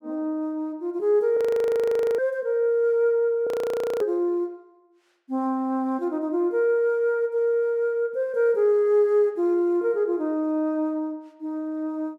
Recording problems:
frozen audio; at 1.5 s for 1 s and at 3.5 s for 0.5 s

